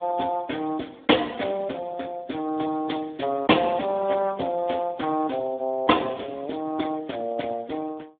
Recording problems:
telephone audio; 220 Hz to 3.5 kHz, Speex

